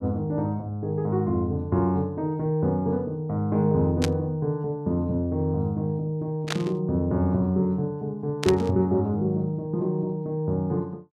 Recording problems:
static burst; at 4 s, at 6.5 s and at 8.5 s; peak +2 dB vs average level

